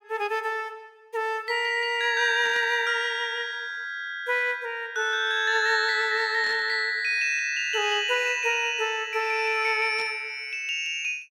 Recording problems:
burst of static; at 2.5 s, at 6.5 s and at 10 s; peak -13 dB vs average level

